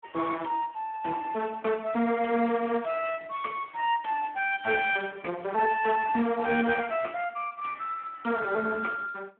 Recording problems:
phone line; 240 Hz to 3.2 kHz, Speex

